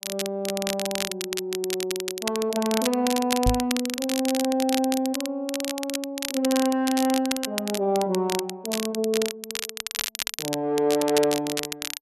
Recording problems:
crackling; vinyl, SNR 5 dB
microphone thump; at 3.5 s; peak +5 dB vs average level

